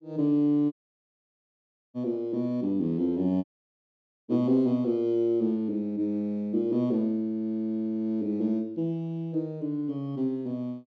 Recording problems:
dropout; at 0.5 s for 1 s and at 3.5 s for 1 s

